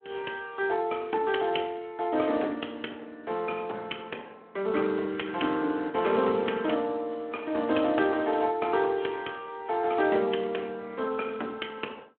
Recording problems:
telephone audio; 220 Hz to 3.3 kHz, Speex

